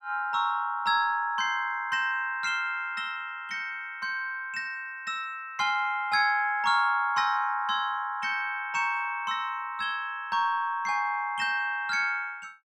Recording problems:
none

